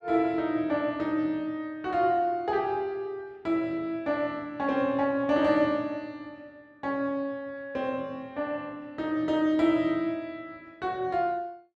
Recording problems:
none

